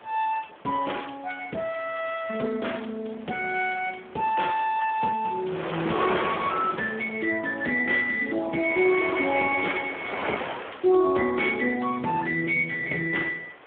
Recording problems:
phone line; 300 Hz to 3.3 kHz, Speex
wind noise; below 1.9 kHz, SNR 7 dB
crackle; from 7.5 to 9.5 s; loose cable, SNR 27 dB

